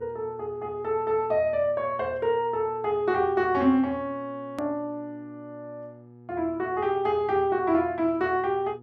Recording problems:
hum; 60 Hz, harmonics up to 960 Hz, SNR 22 dB
hard cut with a click; at 4.5 s

